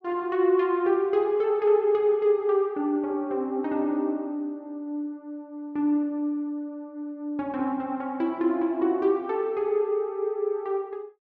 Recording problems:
none

